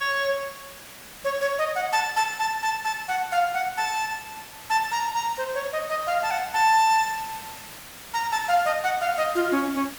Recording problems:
hiss; slope -1 dB per octave, SNR 15 dB

